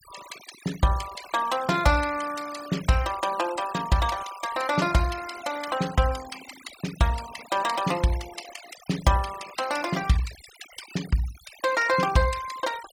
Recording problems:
denoising artefacts; signal-to-artefact ratio 15 dB

